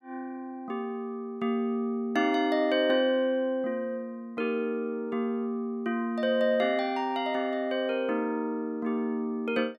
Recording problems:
none

